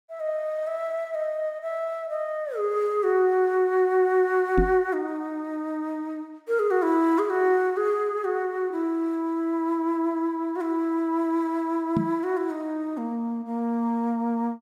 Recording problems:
knock on the microphone; at 4.5 s and at 12 s; peak +5 dB vs average level

